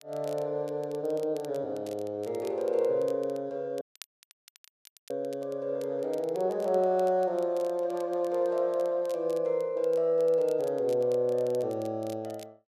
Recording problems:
crackle; vinyl, SNR 25 dB
audio cutting out; at 4 s for 1.5 s

